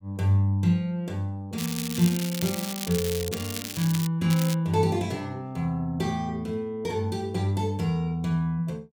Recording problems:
crackling; from 1.5 to 4 s and at 4.5 s; loose cable, SNR 7 dB

